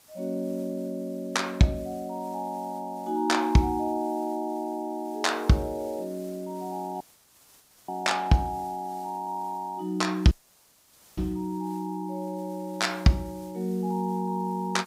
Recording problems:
background hiss; slope -1 dB per octave, SNR 25 dB
dropout; at 7 s for 1 s and at 10 s for 1 s

